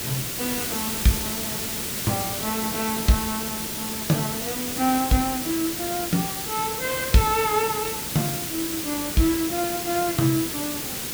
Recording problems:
background hiss; SNR 1 dB

